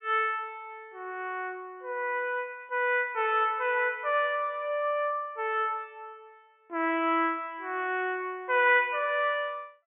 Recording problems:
low-pass filter; nothing above 3.2 kHz

